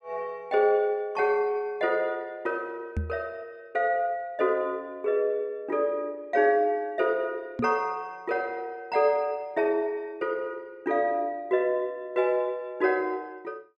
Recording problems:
knock on the microphone; at 3 s and at 7.5 s; peak +1 dB vs average level

